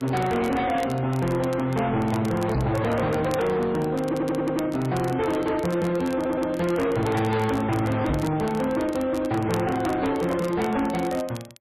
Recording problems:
lossy compression; MP3, log-spectral distance 2 dB
distortion; hard clipping, signal-to-distortion ratio 7 dB
crackling; vinyl, SNR 21 dB
microphone bump; at 2.5 s and at 8 s; peak +4 dB vs average level
stutter; at 4 s and at 6 s

